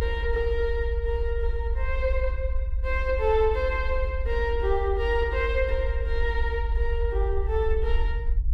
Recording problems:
low-frequency rumble; below 66 Hz, SNR 1 dB

